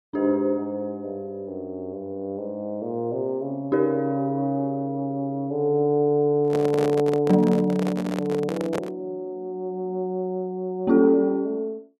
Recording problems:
microphone handling noise; from 6.5 to 9 s; peak -1 dB vs average level

